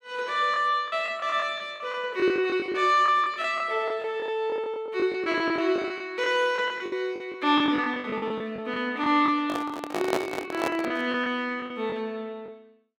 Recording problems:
lost packets; 14% of the sound replaced, filled with the last packet
microphone handling noise; from 9.5 to 11 s; peak +4 dB vs average level

